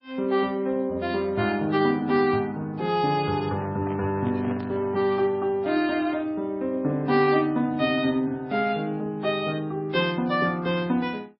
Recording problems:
lossy compression; MP3, log-spectral distance 2 dB, nothing above 4.6 kHz
handling noise; from 3.5 to 5 s; peak -8 dB vs average level

